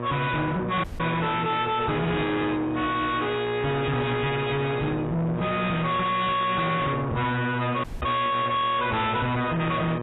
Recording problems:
lossy codec; AAC, log-spectral distance 4 dB, nothing above 3.8 kHz
distortion; soft clipping, signal-to-distortion ratio 6 dB
electrical hum; 60 Hz, harmonics up to 2.5 kHz, SNR 7 dB
dropout; at 1 s and at 8 s
knock on the microphone; at 8 s; peak -2 dB vs average level

